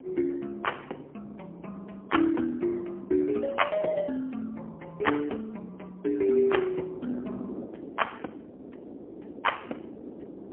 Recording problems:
phone line; 220 Hz to 3.2 kHz, AMR-NB, then MP3
wind on the microphone; below 440 Hz, SNR 16 dB

